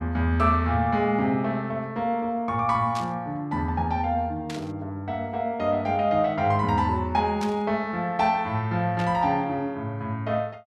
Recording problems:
static burst; 4 times, first at 3 s; peak -8 dB vs average level

